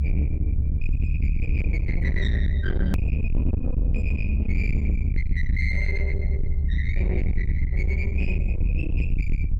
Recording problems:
distorted audio; soft clipping, signal-to-distortion ratio 6 dB
hum; 50 Hz, harmonics up to 1.7 kHz, SNR 24 dB
low-frequency rumble; below 80 Hz, SNR -7 dB
hard cut with a click; at 3 s

